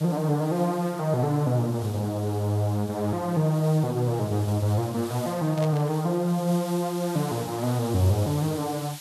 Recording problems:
hiss; SNR 17 dB
static burst; at 5.5 s; peak -10 dB vs average level

